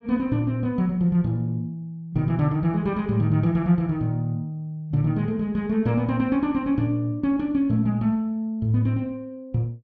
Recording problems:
none

